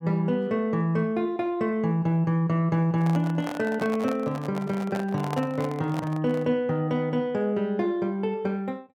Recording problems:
microphone handling noise; from 3 to 6.5 s; peak -4 dB vs average level

